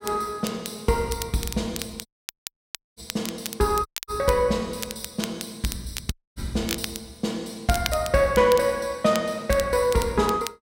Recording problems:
crackling; vinyl, SNR 11 dB
audio cutting out; at 2 s for 1 s, at 4 s and at 6 s

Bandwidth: 16 kHz